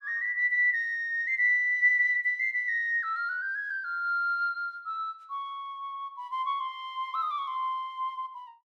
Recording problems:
none

